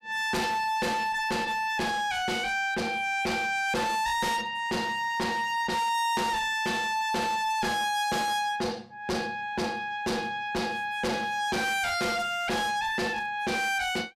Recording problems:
distorted audio; hard clipping, uneven, signal-to-distortion ratio 6 dB

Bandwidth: 14.5 kHz